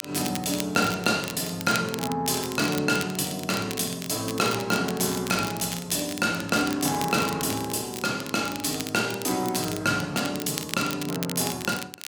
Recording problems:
crackling; vinyl, SNR 10 dB

